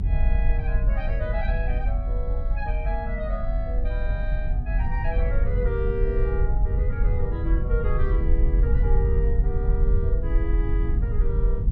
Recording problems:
rumble; below 60 Hz, SNR -8 dB

